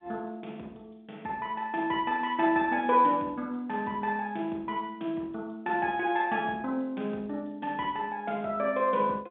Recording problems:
phone line; 170 Hz to 3.9 kHz, G.711

